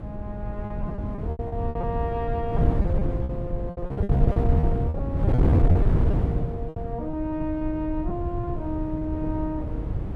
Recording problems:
rumble; below 76 Hz, SNR 9 dB
wind noise; below 160 Hz, SNR -6 dB
packet loss; 13% of the sound replaced, filled with repeated pitch periods

